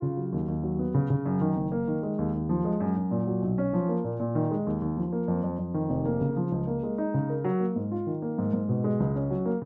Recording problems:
none

